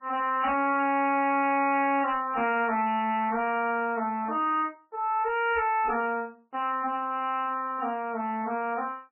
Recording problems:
lossy codec; MP3, log-spectral distance 3 dB, nothing above 2.5 kHz
distorted audio; hard clipping, signal-to-distortion ratio 11 dB
burst of static; at 1.5 s, at 3 s and at 4.5 s; peak -17 dB vs average level

